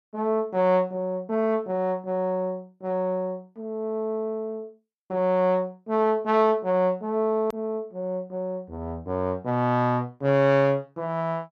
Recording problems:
click at an edit; at 7.5 s

